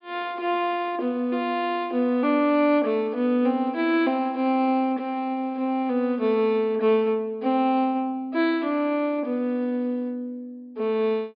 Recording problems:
low-pass filter; nothing above 5.1 kHz

